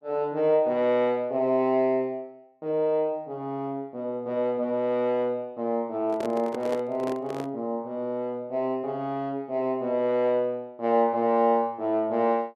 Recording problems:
microphone handling noise; from 6 to 7.5 s; peak -2 dB vs average level

